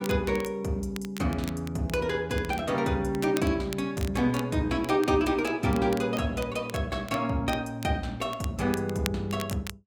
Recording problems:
crackling; vinyl, SNR 16 dB

